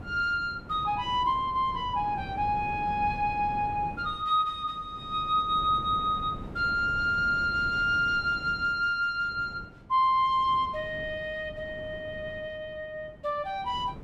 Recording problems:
wind on the microphone; below 330 Hz, SNR 15 dB

